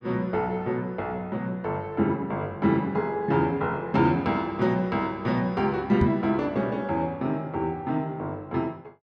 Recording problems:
microphone bump; at 6 s; peak +6 dB vs average level

